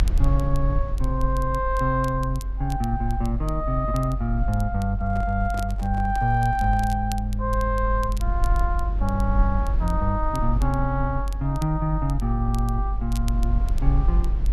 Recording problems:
low-frequency rumble; below 48 Hz, strongest tone 46 Hz, SNR 1 dB
crackle; vinyl, SNR 21 dB
microphone handling noise; from 5 to 7 s; peak -9 dB vs average level

